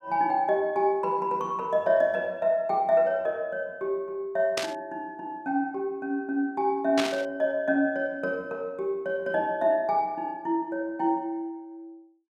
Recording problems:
burst of static; at 4.5 s and at 7 s; peak +2 dB vs average level

